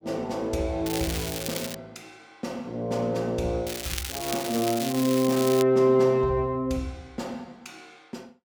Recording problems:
crackle; at 1 s and from 3.5 to 5.5 s; loose cable, SNR 7 dB

